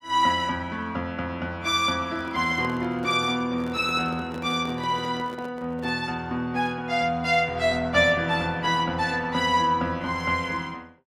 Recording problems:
handling noise; from 2 to 6 s; peak -10 dB vs average level

